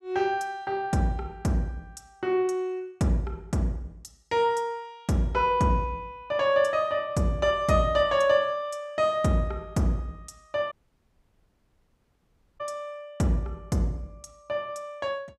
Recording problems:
audio cutting out; at 11 s for 2 s

